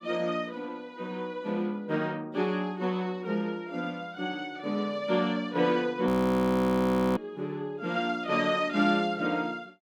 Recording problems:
audio freezing; at 6 s for 1 s

